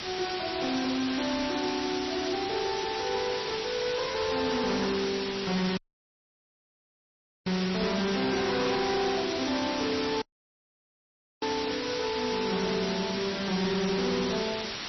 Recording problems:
lossy compression; MP3, log-spectral distance 17 dB, nothing above 5.7 kHz
distortion; hard clipping, uneven, signal-to-distortion ratio 12 dB
hiss; slope 0 dB per octave, SNR 4 dB
audio cutting out; at 6 s for 1.5 s and at 10 s for 1 s

